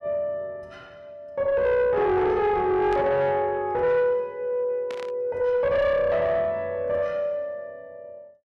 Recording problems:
distorted audio; soft clipping, signal-to-distortion ratio 10 dB
static burst; at 3 s and at 5 s; peak -12 dB vs average level

